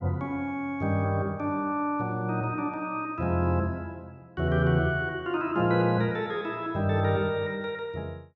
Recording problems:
none

